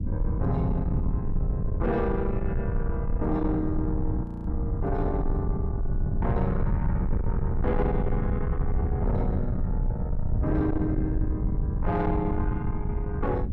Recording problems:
distortion; soft clipping, signal-to-distortion ratio 11 dB
rumble; below 130 Hz, SNR -1 dB
frozen audio; at 4 s

